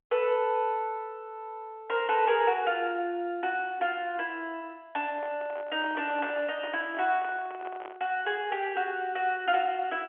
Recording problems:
telephone audio; 280 Hz to 3.3 kHz, G.711
microphone handling noise; from 5 to 8 s; peak -8 dB vs average level

